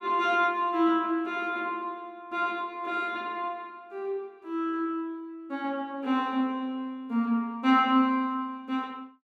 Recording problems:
none

